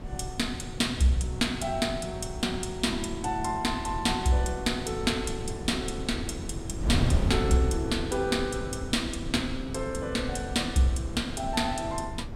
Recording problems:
wind noise; below 180 Hz, SNR 6 dB

